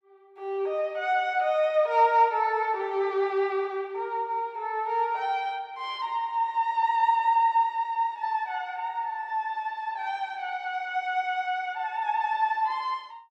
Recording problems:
none

